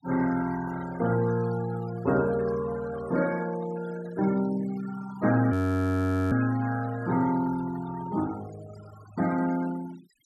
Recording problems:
noise reduction artefacts; signal-to-artefact ratio 16 dB
frozen audio; at 5.5 s for 1 s

